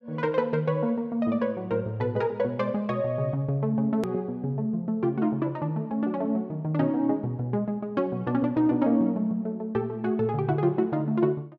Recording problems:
click at an edit; at 4 s

